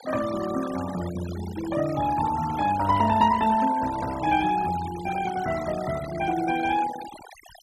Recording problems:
denoising artefacts; signal-to-artefact ratio 13 dB

